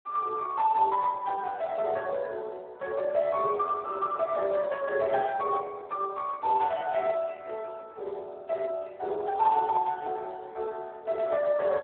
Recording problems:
telephone audio; 340 Hz to 2.6 kHz, Speex

